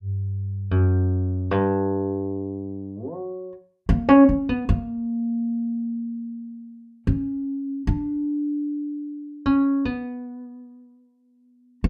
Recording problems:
none

